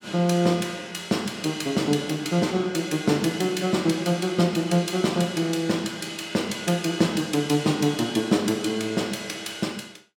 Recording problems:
none

